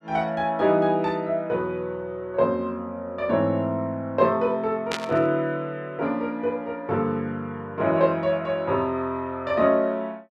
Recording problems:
burst of static; at 5 s; peak 0 dB vs average level

